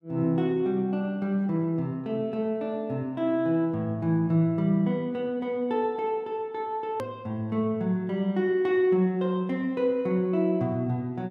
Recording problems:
hard cut with a click; at 7 s

